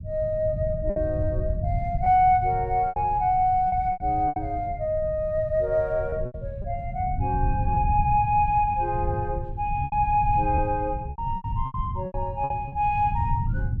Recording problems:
low-frequency rumble; below 120 Hz, SNR 7 dB
lost packets; 8% of the sound replaced, filled with repeated pitch periods

